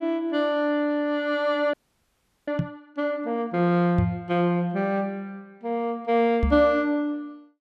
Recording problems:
frozen audio; at 1.5 s for 0.5 s
knock on the microphone; at 2.5 s, at 4 s and at 6.5 s; peak +4 dB vs average level

